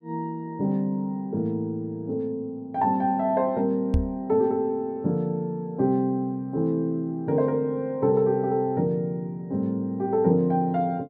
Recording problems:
microphone thump; at 4 s; peak +5 dB vs average level

